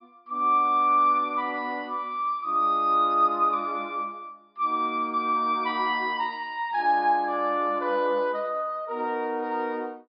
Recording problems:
low-pass filter; nothing above 5.5 kHz

